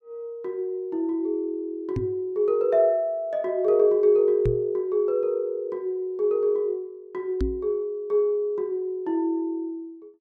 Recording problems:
microphone thump; at 2 s, at 4.5 s and at 7.5 s; peak +1 dB vs average level

